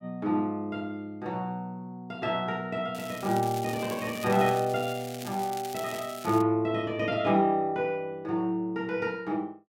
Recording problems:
crackle; from 3 to 6.5 s; loose cable, SNR 14 dB

